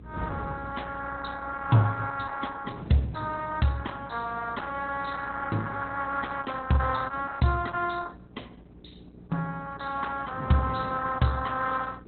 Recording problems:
lossy codec; Opus, log-spectral distance 5 dB, nothing above 4.1 kHz
hum; 60 Hz, harmonics up to 420 Hz, SNR 18 dB
wind on the microphone; below 340 Hz, SNR 17 dB

